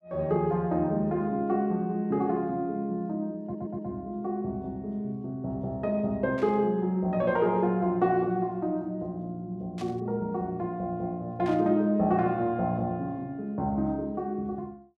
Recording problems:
stutter; at 3.5 s
burst of static; at 6.5 s, at 10 s and at 11 s; peak -12 dB vs average level

